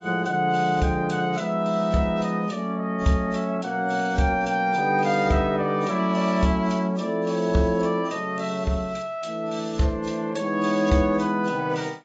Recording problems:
codec artefacts; AAC, log-spectral distance 3 dB, nothing above 7.3 kHz

